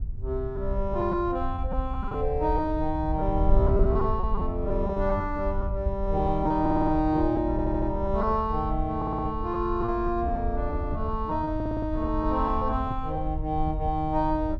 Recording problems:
wind noise; below 74 Hz, SNR 5 dB
packet loss; 7% of the sound replaced, filled with repeated pitch periods
stutter; 4 times, first at 6.5 s

